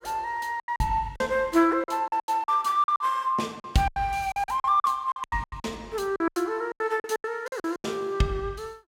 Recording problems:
lost packets; 16% of the sound replaced, filled with silence

